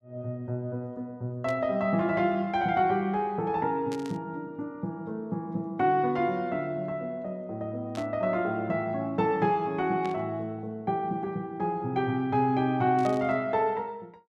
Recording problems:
burst of static; 5 times, first at 1.5 s; peak -10 dB vs average level

